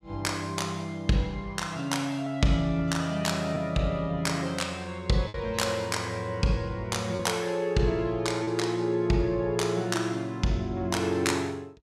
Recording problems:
packet loss; 1.2% of the sound replaced, filled with repeated pitch periods

